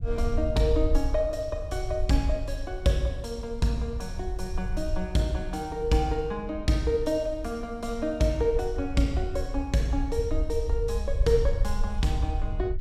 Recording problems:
rumble; below 64 Hz, SNR 5 dB

